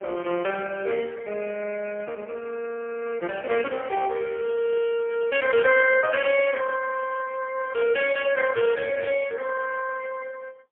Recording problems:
phone line; 240 Hz to 3.1 kHz, AMR-NB, then MP3

